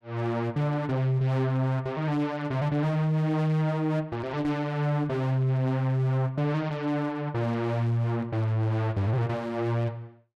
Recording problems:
distortion; hard clipping, uneven, signal-to-distortion ratio 10 dB

